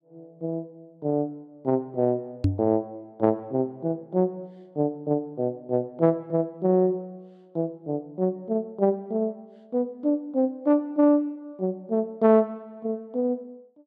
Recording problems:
microphone thump; at 2.5 s; peak +7 dB vs average level

